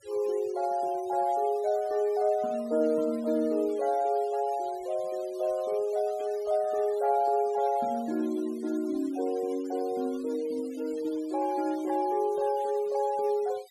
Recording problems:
noise reduction artefacts; signal-to-artefact ratio 22 dB

